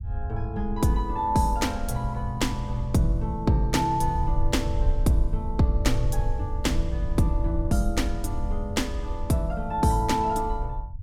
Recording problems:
rumble; below 70 Hz, SNR 5 dB

